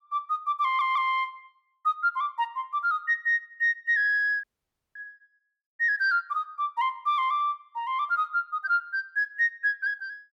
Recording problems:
audio stuttering; at 0.5 s
audio cutting out; at 4.5 s for 0.5 s

